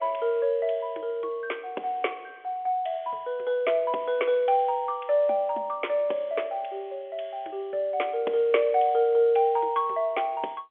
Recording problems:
phone line; 300 Hz to 3.4 kHz, G.711

